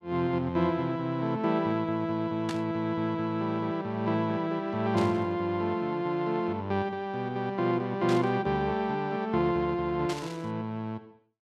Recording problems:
burst of static; 4 times, first at 2.5 s; peak -5 dB vs average level

